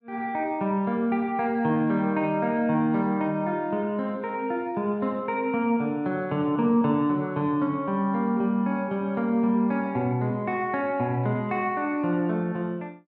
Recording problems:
none

